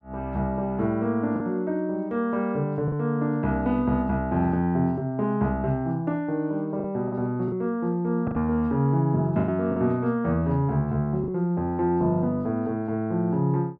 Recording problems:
packet loss; 3% of the sound replaced, filled with the last packet

